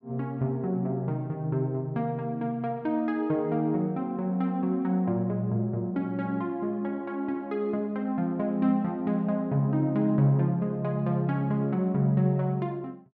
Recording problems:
none

